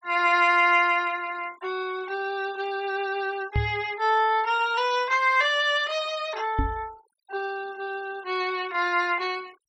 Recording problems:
noise reduction artefacts; signal-to-artefact ratio 23 dB
knock on the microphone; at 3.5 s and at 6.5 s; peak +2 dB vs average level

